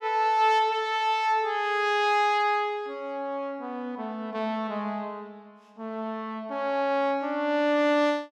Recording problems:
none

